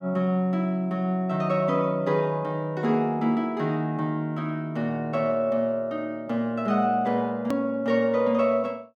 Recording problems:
hard cut with a click; at 7.5 s

